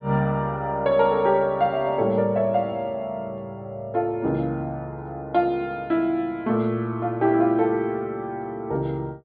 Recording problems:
treble cut off; nothing above 4.7 kHz

